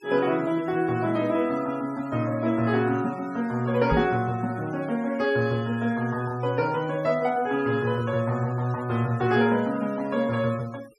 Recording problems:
denoising artefacts; signal-to-artefact ratio 23 dB
microphone bump; at 4 s; peak +2 dB vs average level

